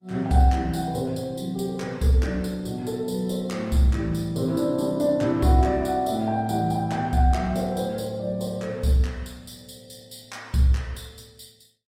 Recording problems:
lossy compression; Opus, log-spectral distance 3 dB, nothing above 16.5 kHz

